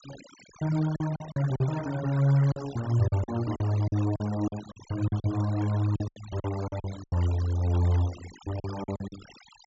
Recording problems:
low-pass filter; nothing above 8 kHz
denoising artefacts; signal-to-artefact ratio 17 dB
lost packets; 12% of the sound replaced, filled with silence

